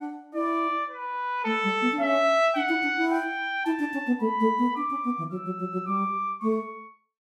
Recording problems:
none

